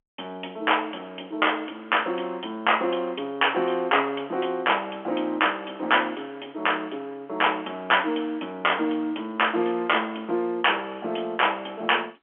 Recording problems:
phone line; 240 Hz to 3.3 kHz, G.711

